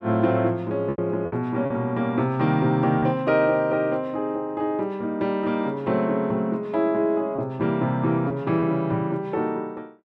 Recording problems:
packet loss; 3% of the sound replaced, filled with repeated pitch periods

